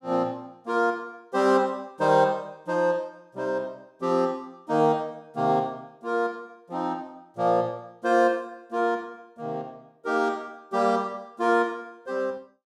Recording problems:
none

